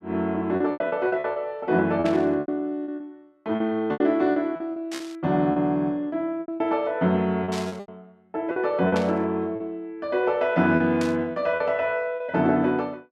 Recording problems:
lost packets; 11% of the sound replaced, filled with repeated pitch periods
static burst; 5 times, first at 2 s; peak -5 dB vs average level

